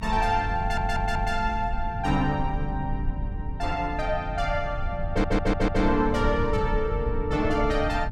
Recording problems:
rumble; below 76 Hz, SNR 6 dB
audio stuttering; at 0.5 s and at 5 s

